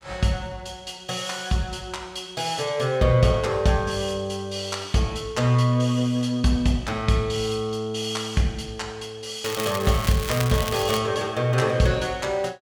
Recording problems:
crackle; from 9.5 to 11 s; loose cable, SNR 8 dB

